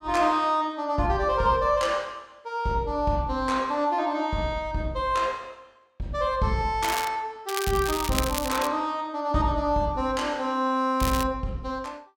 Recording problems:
crackling; at 7 s, from 7.5 to 8.5 s and at 11 s; loose cable, SNR 8 dB

